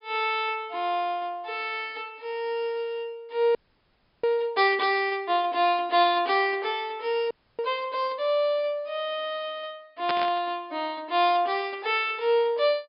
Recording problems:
treble missing; nothing above 5.5 kHz
frozen audio; at 3.5 s for 0.5 s and at 7.5 s
static burst; at 10 s; peak 0 dB vs average level

